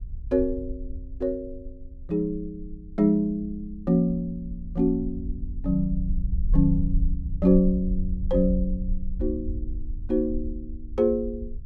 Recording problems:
rumble; below 60 Hz, SNR 7 dB

